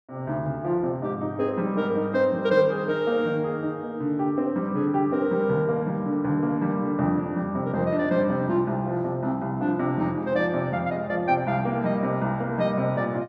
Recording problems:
none

